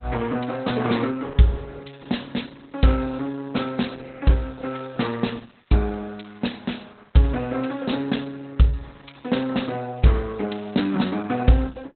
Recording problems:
lossy codec; Opus, log-spectral distance 6 dB, nothing above 4.1 kHz

